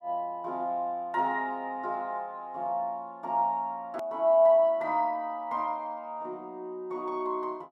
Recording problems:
edit click; at 4 s

